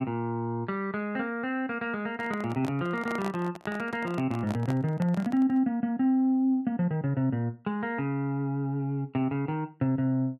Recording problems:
handling noise; from 2 to 5.5 s; peak -4 dB vs average level

